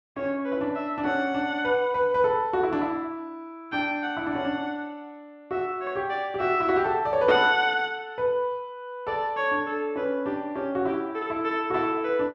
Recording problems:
none

